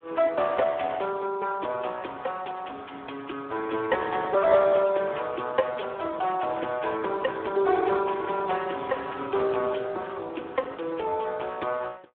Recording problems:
phone line; 300 Hz to 3.3 kHz, Speex

